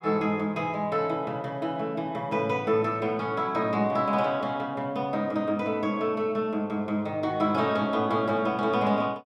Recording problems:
none

